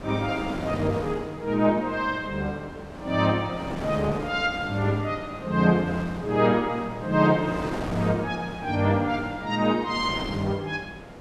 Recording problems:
wind on the microphone; below 840 Hz, SNR 11 dB

